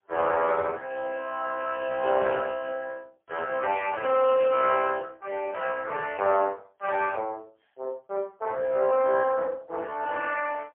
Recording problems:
telephone audio; 340 Hz to 2.9 kHz, AMR-NB, then MP3

